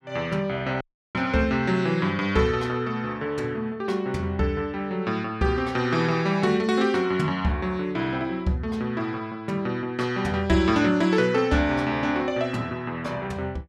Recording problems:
dropout; at 1 s

